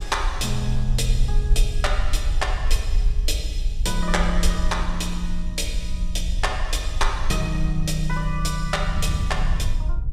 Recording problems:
low-frequency rumble; below 48 Hz, strongest tone 22 Hz, SNR 1 dB
wind on the microphone; below 94 Hz, SNR 8 dB

